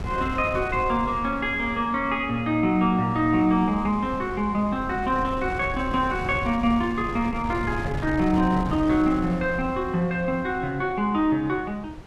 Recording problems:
wind noise; below 300 Hz, SNR 12 dB

